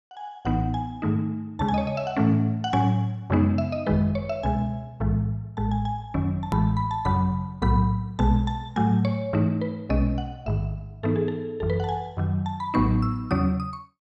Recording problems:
click at an edit; at 6.5 s

